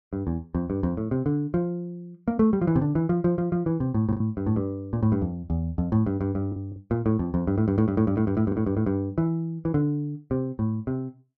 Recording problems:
packet loss; 1.9% of the sound replaced, filled with the last packet

